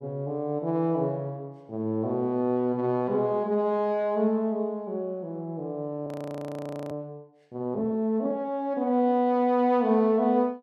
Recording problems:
frozen audio; at 6 s for 1 s

